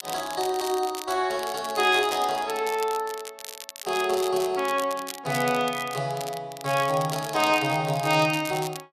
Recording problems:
crackling; vinyl, SNR 13 dB

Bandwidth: 14 kHz